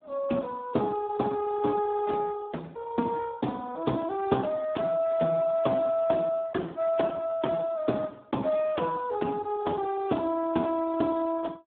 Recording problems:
telephone audio; 190 Hz to 3.7 kHz, Speex

